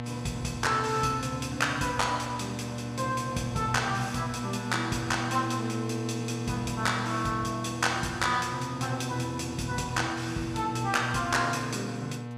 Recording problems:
hum; 60 Hz, harmonics up to 2 kHz, SNR 7 dB

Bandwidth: 14.5 kHz